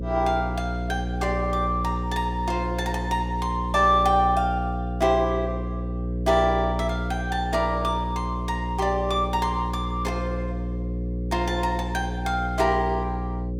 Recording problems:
electrical hum; 60 Hz, harmonics up to 540 Hz, SNR 4 dB

